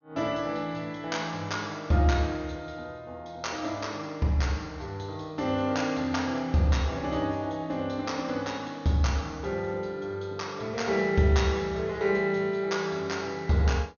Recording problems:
low-pass filter; nothing above 6.6 kHz

